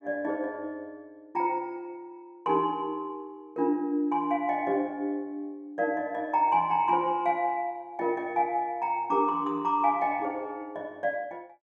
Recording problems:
none

